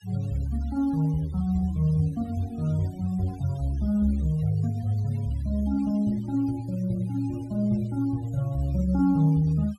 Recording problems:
noise reduction artefacts; signal-to-artefact ratio 24 dB

